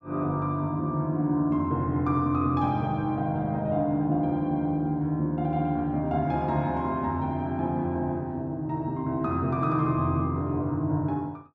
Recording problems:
none

